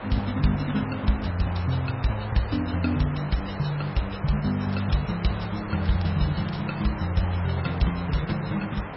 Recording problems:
lossy codec; MP3, log-spectral distance 8 dB, nothing above 5.5 kHz
electrical hum; 50 Hz, harmonics up to 900 Hz, SNR 27 dB
hiss; SNR 10 dB
crackle; at 3.5 s and from 4.5 to 7 s; loose cable, SNR 21 dB

